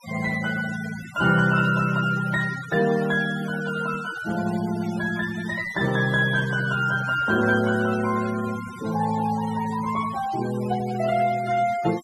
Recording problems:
noise reduction artefacts; signal-to-artefact ratio 15 dB

